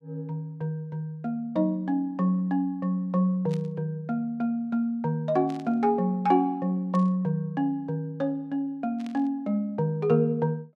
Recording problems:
burst of static; 4 times, first at 3.5 s; peak -15 dB vs average level

